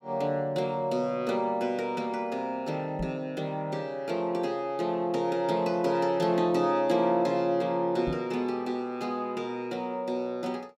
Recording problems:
knock on the microphone; at 3 s and at 8 s; peak -2 dB vs average level

